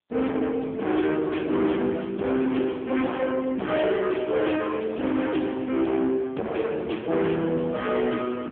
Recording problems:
telephone audio; 150 Hz to 3.4 kHz, AMR-NB
distortion; soft clipping, signal-to-distortion ratio 8 dB

